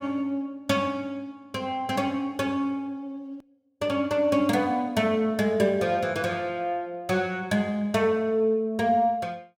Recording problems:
edit click; at 3.5 s

